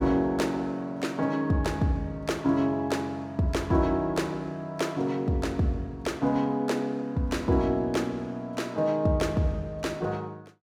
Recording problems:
none

